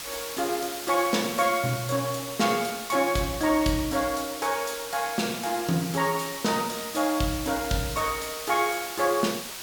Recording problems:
hiss; slope +1 dB per octave, SNR 8 dB

